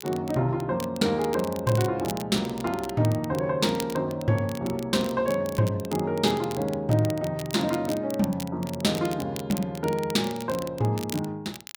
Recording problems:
crackle; vinyl, SNR 15 dB

